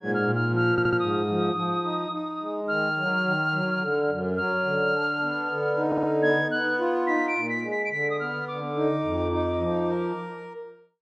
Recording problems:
audio stuttering; at 0.5 s and at 6 s

